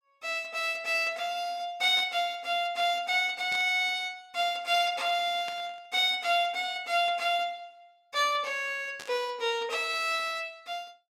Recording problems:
burst of static; 4 times, first at 2 s; peak -10 dB vs average level

